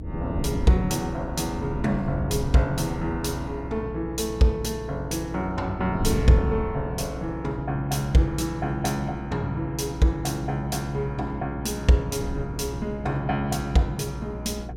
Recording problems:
hum; 60 Hz, harmonics up to 480 Hz, SNR 11 dB
wind on the microphone; below 230 Hz, SNR 9 dB

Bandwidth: 16.5 kHz